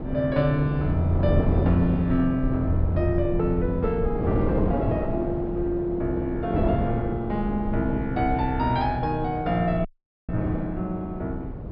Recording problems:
low-pass filter; nothing above 5.5 kHz
low-frequency rumble; below 110 Hz, SNR 9 dB
wind on the microphone; below 420 Hz, SNR 5 dB
audio cutting out; at 10 s

